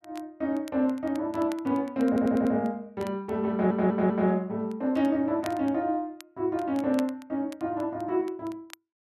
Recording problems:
crackle; vinyl, SNR 23 dB
stutter; at 2 s and at 3.5 s

